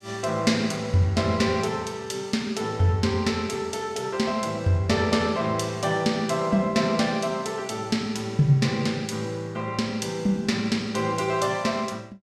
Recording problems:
none

